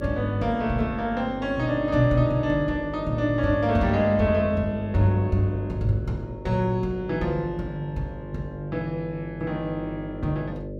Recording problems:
electrical hum; 50 Hz, harmonics up to 600 Hz, SNR 12 dB

